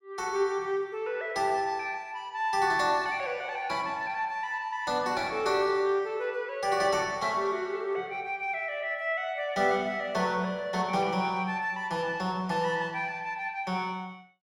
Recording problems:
none

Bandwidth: 16 kHz